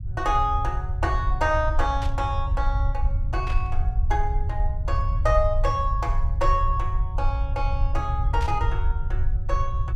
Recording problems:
rumble; below 74 Hz, SNR -1 dB
burst of static; at 2 s, at 3.5 s and at 8.5 s; peak -7 dB vs average level

